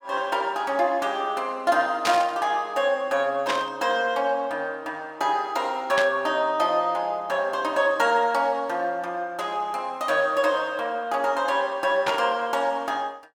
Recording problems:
static burst; 4 times, first at 2 s; peak +2 dB vs average level

